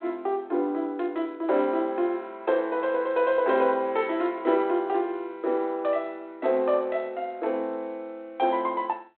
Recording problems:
telephone audio; 240 Hz to 3.5 kHz, G.726

